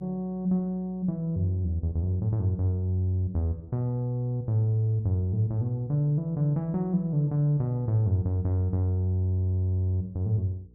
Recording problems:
electrical hum; 60 Hz, harmonics up to 480 Hz, SNR 28 dB

